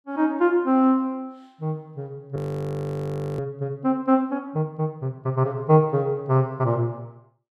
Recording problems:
frozen audio; at 2.5 s for 1 s

